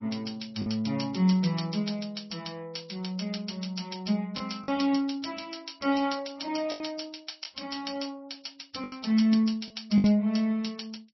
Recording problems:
lossy codec; MP2, then MP3, log-spectral distance 8 dB, nothing above 5.7 kHz
packet loss; 3% of the sound replaced, filled with the last packet

